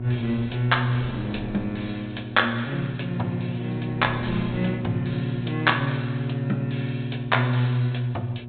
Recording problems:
treble cut off; nothing above 4 kHz
hum; 60 Hz, harmonics up to 720 Hz, SNR 6 dB
wind on the microphone; below 410 Hz, SNR 17 dB

